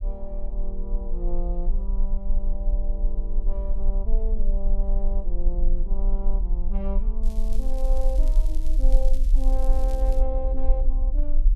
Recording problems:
rumble; below 36 Hz, strongest tone 18 Hz, SNR -10 dB
crackle; from 7 to 10 s; loose cable, SNR 15 dB

